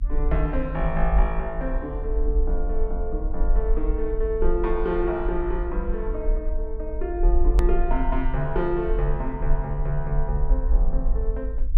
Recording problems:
hum; 50 Hz, harmonics up to 300 Hz, SNR 15 dB
rumble; below 46 Hz, strongest tone 20 Hz, SNR -1 dB
hard cut with a click; at 7.5 s

